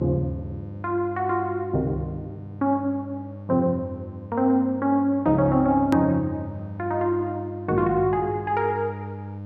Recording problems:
mains hum; 50 Hz, harmonics up to 900 Hz, SNR 13 dB
hard cut with a click; at 6 s

